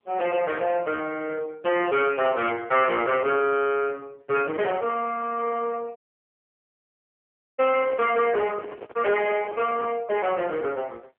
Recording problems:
phone line; 280 Hz to 3.1 kHz, AMR-NB
distortion; soft clipping, signal-to-distortion ratio 8 dB
audio cutting out; at 6 s for 1.5 s
handling noise; from 7.5 to 10 s; peak -7 dB vs average level

